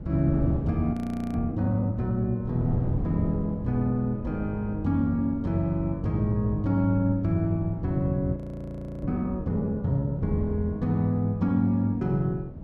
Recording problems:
wind noise; below 230 Hz, SNR 10 dB
audio freezing; at 1 s and at 8.5 s for 0.5 s

